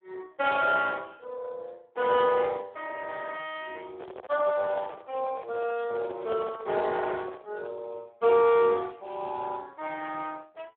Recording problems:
telephone audio; 340 Hz to 2.1 kHz, Speex
handling noise; from 4 to 7.5 s; peak -7 dB vs average level

